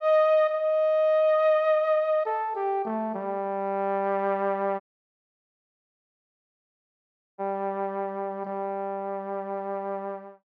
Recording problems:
dropout; at 5 s for 2.5 s

